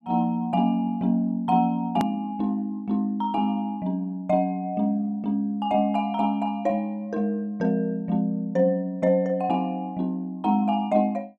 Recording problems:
hard cut with a click; at 2 s

